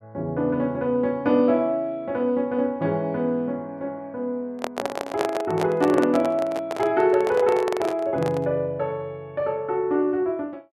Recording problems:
handling noise; from 4.5 to 8.5 s; peak +2 dB vs average level

